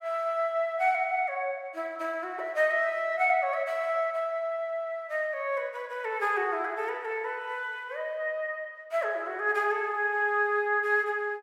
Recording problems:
none

